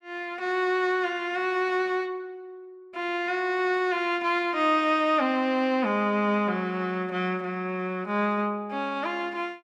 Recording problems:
none

